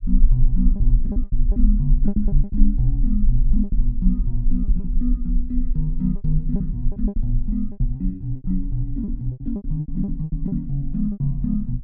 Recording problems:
low-frequency rumble; below 40 Hz, strongest tone 20 Hz, SNR 0 dB
packet loss; 13% of the sound replaced, filled with repeated pitch periods

